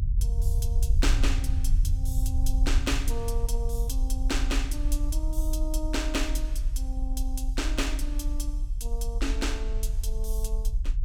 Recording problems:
low-frequency rumble; below 48 Hz, SNR -5 dB

